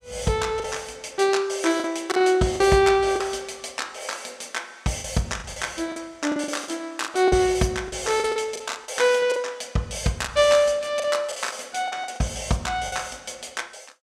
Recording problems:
lost packets; 9% of the sound replaced, filled with the last packet

